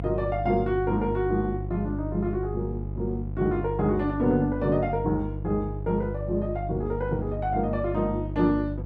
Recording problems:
electrical hum; 50 Hz, harmonics up to 500 Hz, SNR 6 dB

